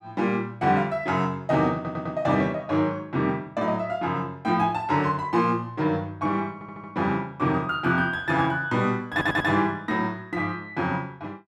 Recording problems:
stutter; at 1.5 s, at 6.5 s and at 9 s

